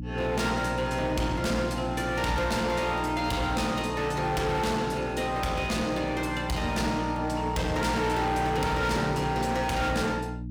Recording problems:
distortion; hard clipping, uneven, signal-to-distortion ratio 7 dB
hum; 60 Hz, harmonics up to 300 Hz, SNR 8 dB

